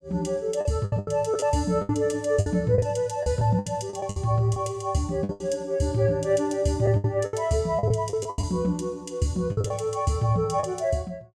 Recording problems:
lost packets; 11% of the sound replaced, filled with the last packet

